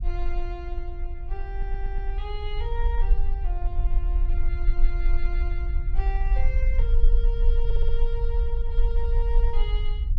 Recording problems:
low-frequency rumble; below 42 Hz, strongest tone 18 Hz, SNR -11 dB
audio stuttering; at 1.5 s and at 7.5 s

